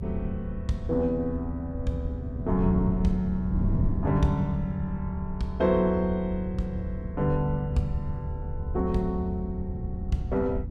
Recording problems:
rumble; below 76 Hz, strongest tone 76 Hz, SNR 8 dB
wind noise; below 160 Hz, SNR 6 dB

